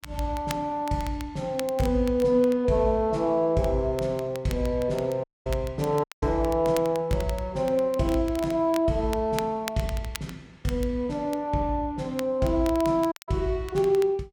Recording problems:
crackling; vinyl, SNR 18 dB
audio cutting out; at 5 s, at 6 s and at 13 s

